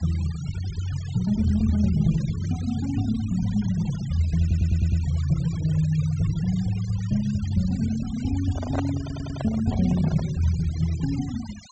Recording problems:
treble cut off; nothing above 8 kHz
denoising artefacts; signal-to-artefact ratio 19 dB
audio stuttering; at 4.5 s and at 9 s
microphone handling noise; from 8.5 to 10 s; peak -2 dB vs average level

